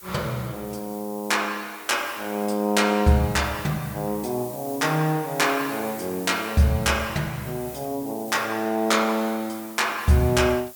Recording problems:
background hiss; slope 0 dB per octave, SNR 16 dB

